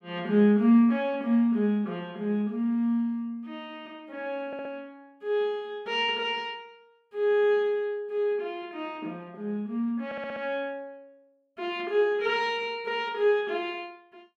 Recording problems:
audio stuttering; at 4.5 s and at 10 s

